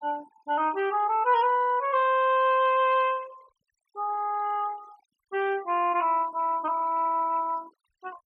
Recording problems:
noise reduction artefacts; signal-to-artefact ratio 25 dB

